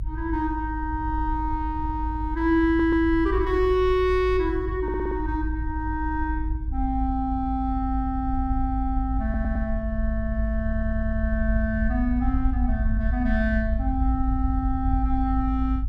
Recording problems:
rumble; below 62 Hz, strongest tone 52 Hz, SNR 3 dB
stutter; 4 times, first at 2.5 s

